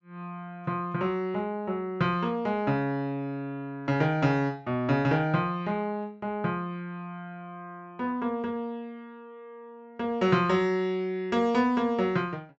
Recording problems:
treble cut off; nothing above 7.7 kHz

